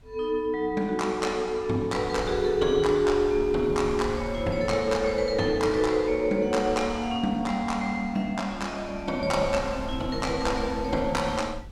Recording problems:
wind noise; below 110 Hz, SNR 15 dB

